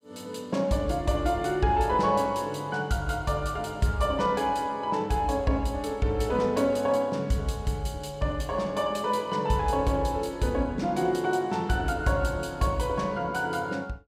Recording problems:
none

